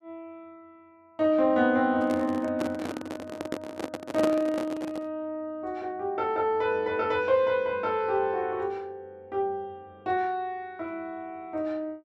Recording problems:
handling noise; from 2 to 5 s; peak +3 dB vs average level

